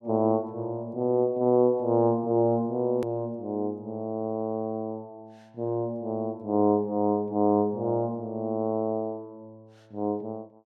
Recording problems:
edit click; at 3 s

